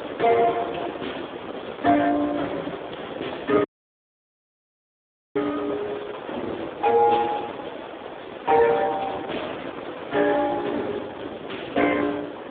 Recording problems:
phone line; 240 Hz to 3.5 kHz, Speex
wind noise; below 1.2 kHz, SNR 11 dB
dropout; at 3.5 s for 1.5 s

